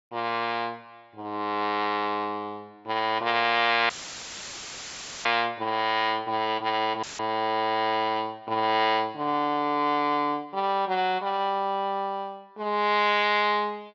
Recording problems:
treble cut off; nothing above 8 kHz
audio cutting out; at 4 s for 1.5 s and at 7 s; filled with static

